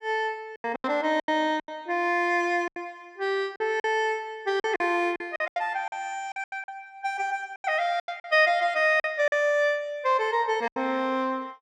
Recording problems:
packet loss; 11% of the sound replaced, filled with silence

